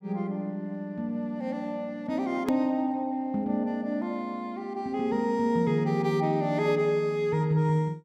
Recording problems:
edit click; at 2.5 s

